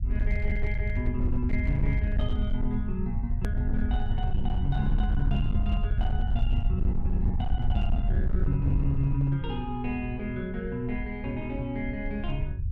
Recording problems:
distortion; hard clipping, signal-to-distortion ratio 12 dB
rumble; below 78 Hz, SNR -2 dB
edit click; at 3.5 s

